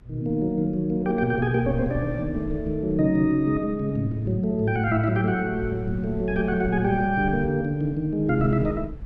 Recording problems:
rumble; below 96 Hz, SNR 15 dB

